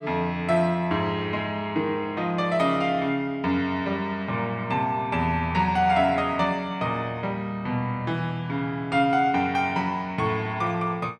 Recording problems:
none

